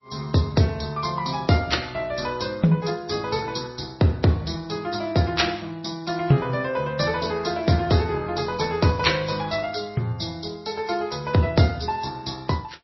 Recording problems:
codec artefacts; AAC, then MP3, log-spectral distance 6 dB, nothing above 5.7 kHz

